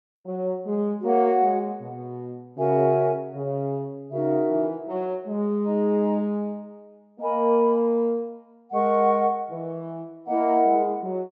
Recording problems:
treble cut off; nothing above 8 kHz

